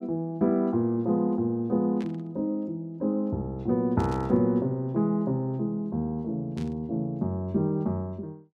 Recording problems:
static burst; at 2 s, at 4 s and at 6.5 s; peak -14 dB vs average level

